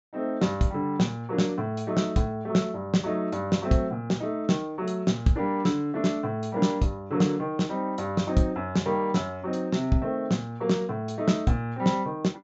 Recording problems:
treble cut off; nothing above 7.5 kHz

